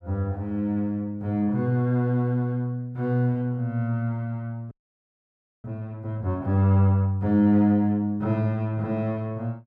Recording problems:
audio freezing; at 4.5 s for 1 s

